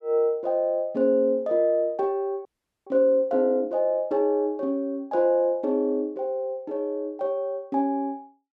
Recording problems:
audio freezing; at 2.5 s

